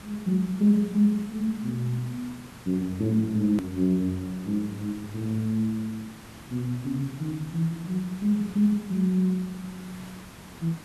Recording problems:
background hiss; slope -4 dB per octave, SNR 18 dB
edit click; at 3.5 s

